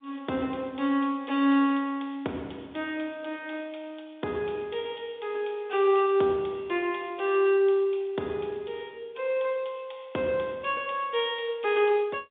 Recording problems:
telephone audio; 220 Hz to 3.7 kHz, G.711

